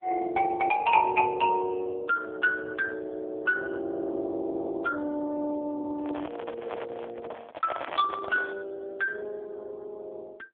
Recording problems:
phone line; 260 Hz to 3.4 kHz, AMR-NB
handling noise; from 6 to 8.5 s; peak -2 dB vs average level

